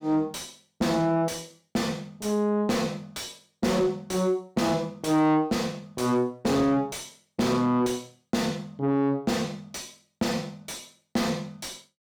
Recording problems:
distortion; soft clipping, signal-to-distortion ratio 6 dB

